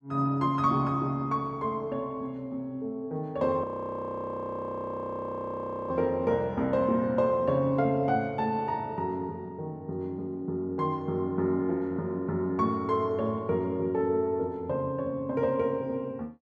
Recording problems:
frozen audio; at 3.5 s for 2.5 s

